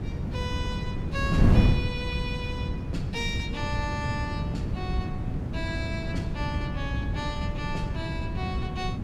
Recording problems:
wind noise; below 190 Hz, SNR -4 dB

